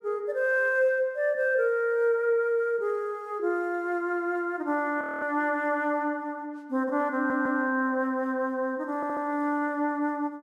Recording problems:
audio freezing; at 5 s
stutter; at 7 s and at 9 s

